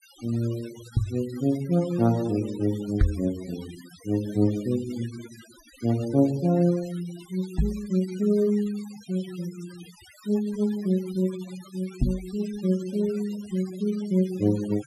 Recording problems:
noise reduction artefacts; signal-to-artefact ratio 20 dB
knock on the microphone; 4 times, first at 1 s; peak +8 dB vs average level

